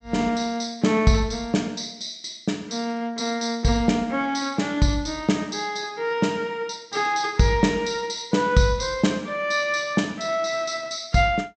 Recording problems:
low-pass filter; nothing above 8 kHz

